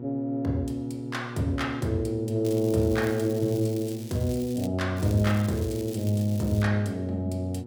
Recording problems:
electrical hum; 60 Hz, harmonics up to 960 Hz, SNR 12 dB
crackling; from 2.5 to 4.5 s and from 5 to 6.5 s; loose cable, SNR 18 dB

